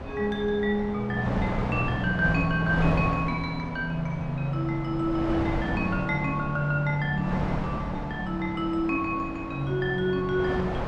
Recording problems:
wind noise; below 770 Hz, SNR 6 dB

